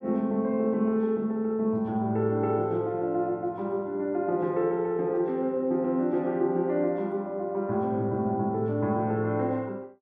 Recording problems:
none

